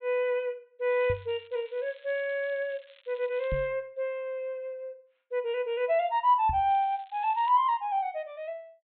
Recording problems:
treble cut off; nothing above 4 kHz
crackling; from 1 to 3.5 s and at 6.5 s; loose cable, SNR 28 dB
microphone thump; at 1 s, at 3.5 s and at 6.5 s; peak -2 dB vs average level

